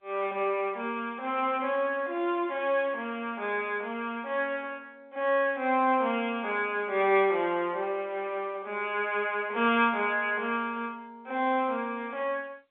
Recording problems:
telephone audio; 280 Hz to 3.6 kHz, G.711

